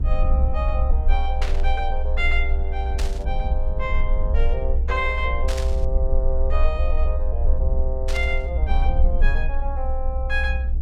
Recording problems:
hum; 60 Hz, harmonics up to 720 Hz, SNR 19 dB
rumble; below 62 Hz, strongest tone 22 Hz, SNR -5 dB
burst of static; 4 times, first at 1.5 s; peak +1 dB vs average level

